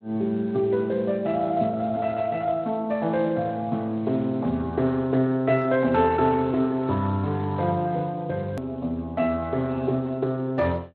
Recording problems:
lossy codec; Speex, log-spectral distance 2 dB
edit click; at 8.5 s

